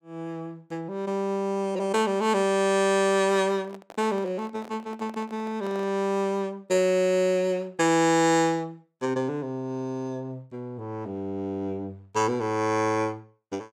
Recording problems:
microphone handling noise; from 3 to 6 s; peak -12 dB vs average level

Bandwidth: 17.5 kHz